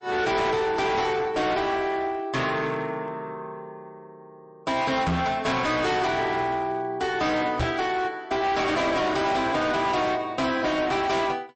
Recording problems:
lossy codec; MP3, log-spectral distance 2 dB, nothing above 8 kHz
distorted audio; hard clipping, uneven, signal-to-distortion ratio 7 dB
knock on the microphone; at 5 s and at 7.5 s; peak +3 dB vs average level

